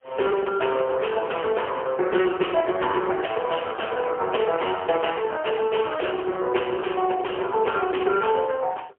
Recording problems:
phone line; 320 Hz to 3.2 kHz, AMR-NB, then MP3

